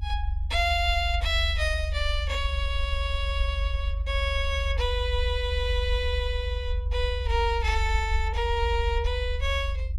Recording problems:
rumble; below 74 Hz, strongest tone 50 Hz, SNR 1 dB

